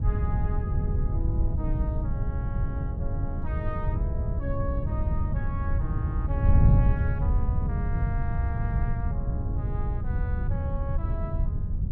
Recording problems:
wind on the microphone; below 110 Hz, SNR -11 dB

